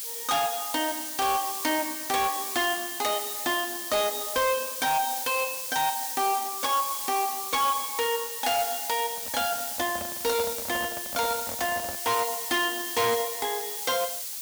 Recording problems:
distortion; hard clipping, signal-to-distortion ratio 12 dB
hiss; slope +4 dB per octave, SNR 3 dB
handling noise; from 9 to 12 s; peak -5 dB vs average level

